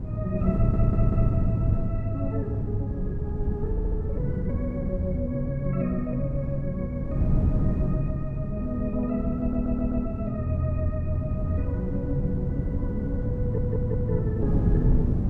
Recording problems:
wind on the microphone; below 170 Hz, SNR -1 dB
audio stuttering; 4 times, first at 0.5 s

